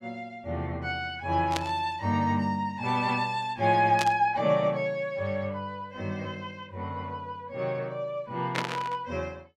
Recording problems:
static burst; at 1.5 s, at 4 s and at 8.5 s; peak +3 dB vs average level

